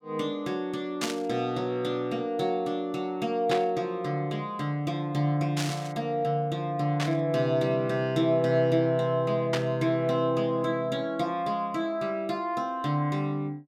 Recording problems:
static burst; 5 times, first at 1 s; peak +1 dB vs average level

